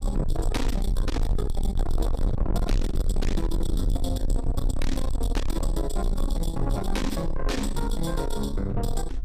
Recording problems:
distorted audio; soft clipping, signal-to-distortion ratio 6 dB
low-frequency rumble; below 56 Hz, SNR 1 dB

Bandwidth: 14.5 kHz